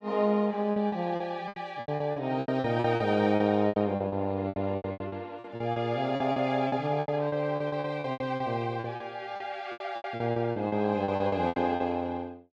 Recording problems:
packet loss; 19% of the sound replaced, filled with repeated pitch periods

